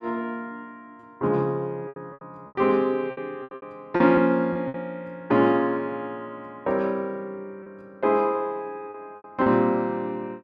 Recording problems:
packet loss; 8% of the sound replaced, filled with repeated pitch periods

